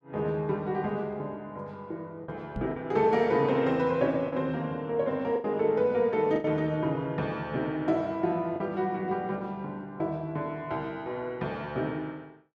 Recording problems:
packet loss; 3% of the sound replaced, filled with the last packet
knock on the microphone; at 2.5 s; peak -2 dB vs average level

